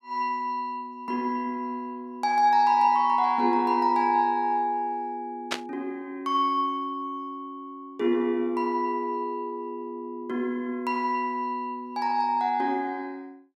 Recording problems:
burst of static; at 5.5 s; peak +2 dB vs average level

